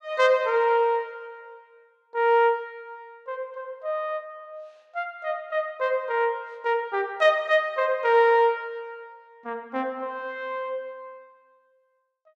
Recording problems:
none

